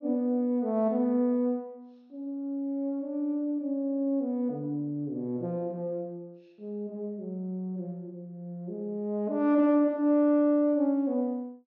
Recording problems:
treble cut off; nothing above 6.6 kHz

